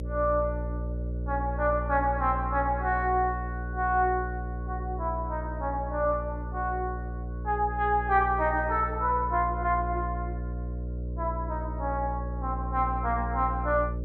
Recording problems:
hum; 60 Hz, harmonics up to 600 Hz, SNR 6 dB

